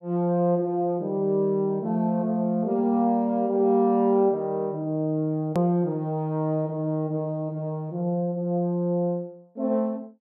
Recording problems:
edit click; at 5.5 s

